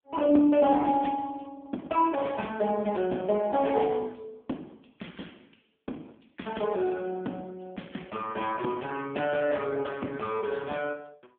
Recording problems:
phone line; 190 Hz to 3.5 kHz, AMR-NB

